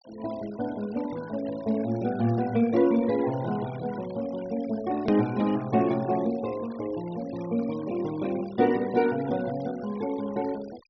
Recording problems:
treble missing; nothing above 5.9 kHz
noise reduction artefacts; signal-to-artefact ratio 19 dB
edit click; at 5 s

